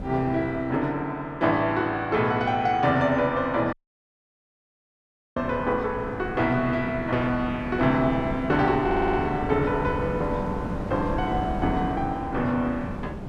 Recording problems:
wind on the microphone; below 330 Hz, SNR 9 dB
audio cutting out; at 3.5 s for 1.5 s
stutter; at 9 s

